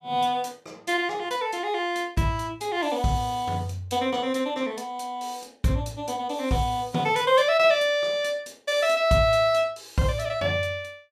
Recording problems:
none

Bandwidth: 15 kHz